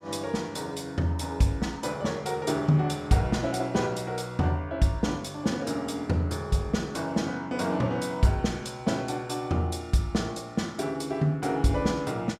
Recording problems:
none

